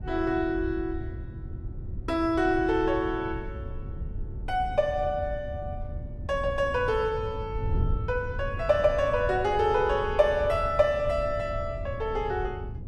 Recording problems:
wind on the microphone; below 110 Hz, SNR 9 dB

